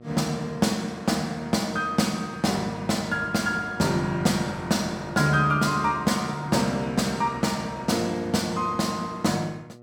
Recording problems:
electrical hum; 60 Hz, harmonics up to 1.3 kHz, SNR 25 dB

